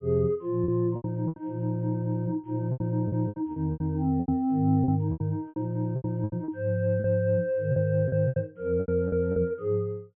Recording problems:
low-pass filter; nothing above 3.3 kHz
lost packets; 14% of the sound replaced, filled with repeated pitch periods

